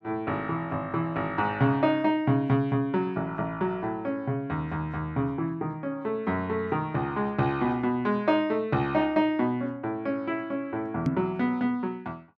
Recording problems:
microphone thump; at 11 s; peak +4 dB vs average level

